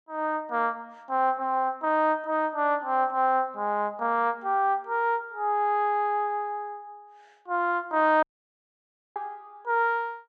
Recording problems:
dropout; at 8 s for 1 s

